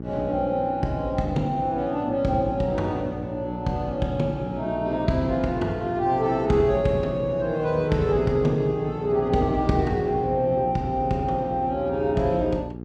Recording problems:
electrical hum; 60 Hz, harmonics up to 840 Hz, SNR 11 dB

